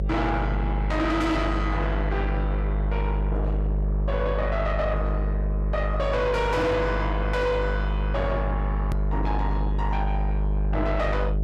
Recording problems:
distortion; soft clipping, signal-to-distortion ratio 7 dB
hum; 50 Hz, harmonics up to 600 Hz, SNR 0 dB
click at an edit; at 9 s

